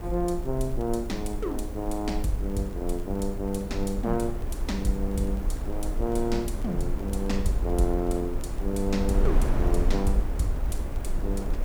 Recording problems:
hiss; slope +2 dB per octave, SNR 24 dB
wind noise; below 62 Hz, SNR 2 dB
crackling; vinyl, SNR 29 dB

